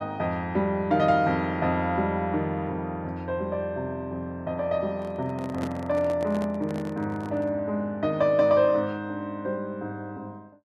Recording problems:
handling noise; from 5 to 7.5 s; peak -4 dB vs average level

